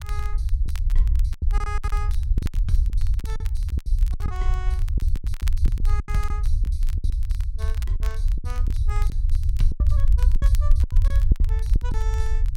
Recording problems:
rumble; below 62 Hz, SNR -14 dB
crackling; vinyl, SNR 10 dB
lost packets; 13% of the sound replaced, filled with silence

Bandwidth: 16 kHz